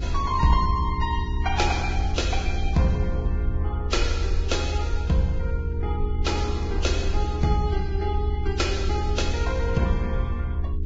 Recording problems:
lossy compression; Vorbis, then Vorbis, log-spectral distance 2 dB, nothing above 7.3 kHz
electrical hum; 60 Hz, harmonics up to 420 Hz, SNR 7 dB
low-frequency rumble; below 78 Hz, SNR 1 dB

